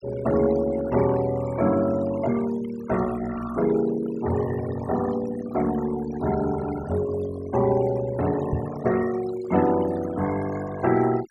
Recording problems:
denoising artefacts; signal-to-artefact ratio 13 dB
microphone bump; at 8.5 s; peak 0 dB vs average level

